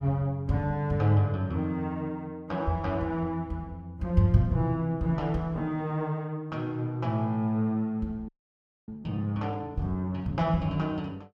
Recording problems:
audio freezing; at 8.5 s for 0.5 s

